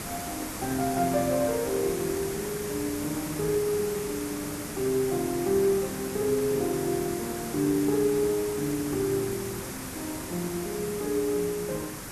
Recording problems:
hiss; slope -4 dB per octave, SNR 7 dB

